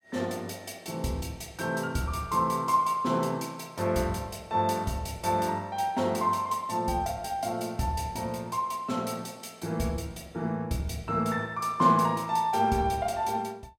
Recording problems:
none

